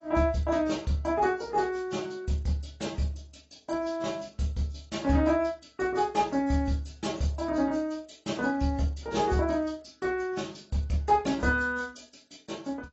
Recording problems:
codec artefacts; AAC, log-spectral distance 4 dB, nothing above 7.6 kHz

